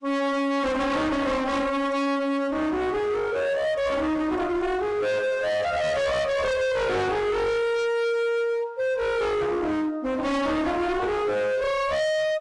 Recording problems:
lossy codec; AAC, log-spectral distance 2 dB, nothing above 10.7 kHz
distorted audio; hard clipping, signal-to-distortion ratio 6 dB

